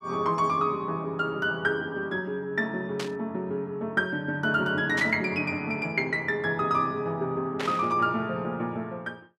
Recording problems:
static burst; at 3 s, at 5 s and at 7.5 s; peak -1 dB vs average level

